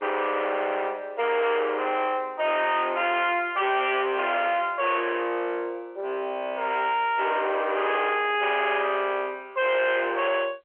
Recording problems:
phone line; 320 Hz to 3.3 kHz, G.711
distorted audio; soft clipping, signal-to-distortion ratio 6 dB

